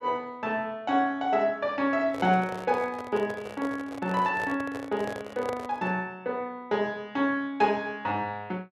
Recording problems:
microphone handling noise; from 2 to 6 s; peak -2 dB vs average level

